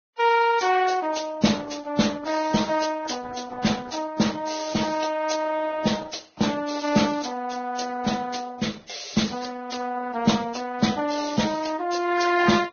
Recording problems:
lossy compression; Opus, then Vorbis, log-spectral distance 6 dB, nothing above 6.5 kHz

